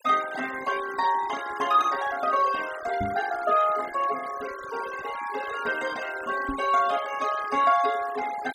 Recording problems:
denoising artefacts; signal-to-artefact ratio 15 dB
knock on the microphone; at 3 s and at 6.5 s; peak -3 dB vs average level

